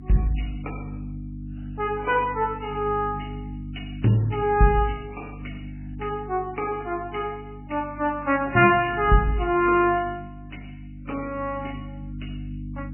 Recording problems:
lossy compression; MP3, log-spectral distance 4 dB, nothing above 2.4 kHz
hum; 50 Hz, harmonics up to 300 Hz, SNR 14 dB

